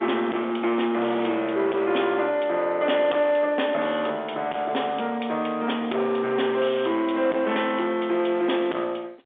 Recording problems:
phone line; 280 Hz to 3.6 kHz, G.711
distorted audio; soft clipping, signal-to-distortion ratio 12 dB

